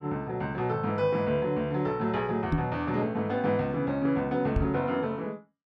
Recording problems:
microphone thump; at 2.5 s and at 4.5 s; peak +5 dB vs average level

